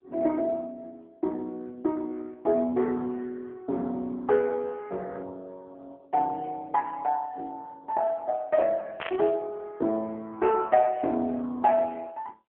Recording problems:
phone line; 240 Hz to 2.5 kHz, AMR-NB
static burst; at 9 s; peak -4 dB vs average level

